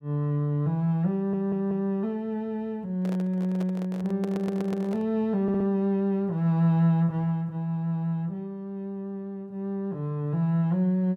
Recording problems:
stutter; at 1 s, at 4 s and at 5.5 s
handling noise; from 3 to 5 s; peak -7 dB vs average level

